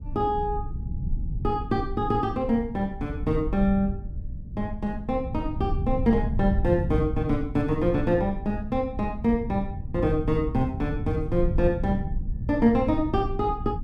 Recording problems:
rumble; below 110 Hz, SNR 6 dB

